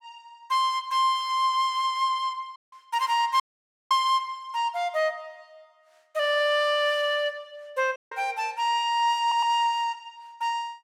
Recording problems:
audio cutting out; at 2.5 s, at 3.5 s for 0.5 s and at 8 s
audio stuttering; at 9 s

